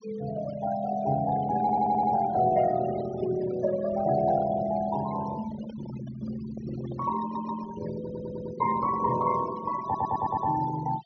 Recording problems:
treble missing; nothing above 6.4 kHz
noise reduction artefacts; signal-to-artefact ratio 15 dB
audio stuttering; 4 times, first at 1.5 s
microphone handling noise; from 5.5 to 8 s; peak -14 dB vs average level

